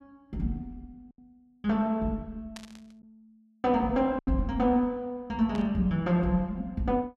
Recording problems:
packet loss; 1.5% of the sound replaced, filled with silence
static burst; at 2.5 s and at 5.5 s; peak -10 dB vs average level

